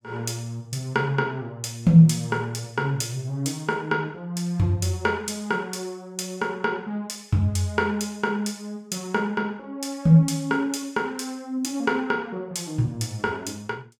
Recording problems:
none

